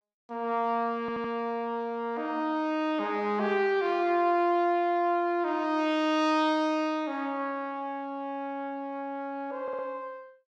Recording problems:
audio stuttering; at 1 s and at 9.5 s

